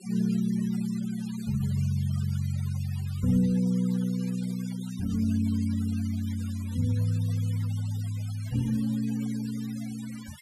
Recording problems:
denoising artefacts; signal-to-artefact ratio 19 dB

